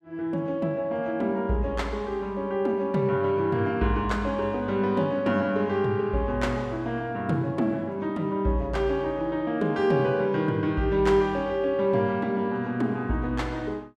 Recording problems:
none

